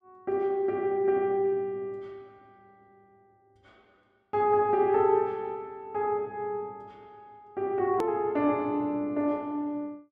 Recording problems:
edit click; at 8 s

